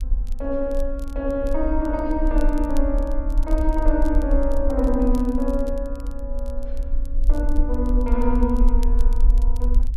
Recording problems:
low-frequency rumble; below 44 Hz, strongest tone 20 Hz, SNR 0 dB
crackle; vinyl, SNR 26 dB

